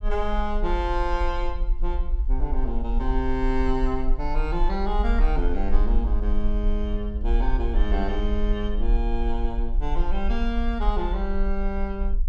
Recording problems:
low-frequency rumble; below 44 Hz, SNR -2 dB

